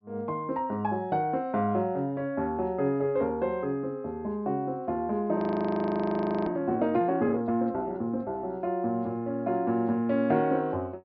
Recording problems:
treble missing; nothing above 5.5 kHz
audio freezing; at 5.5 s for 1 s

